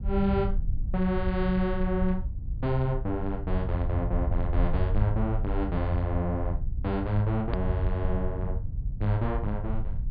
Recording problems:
low-pass filter; nothing above 4.9 kHz
rumble; below 78 Hz, SNR 3 dB
click at an edit; at 7.5 s

